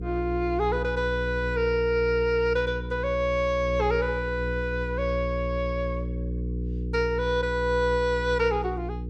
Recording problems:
hum; 60 Hz, harmonics up to 480 Hz, SNR 6 dB

